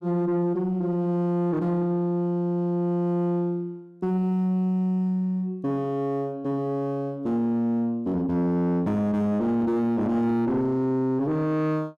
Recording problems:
distorted audio; soft clipping, signal-to-distortion ratio 11 dB

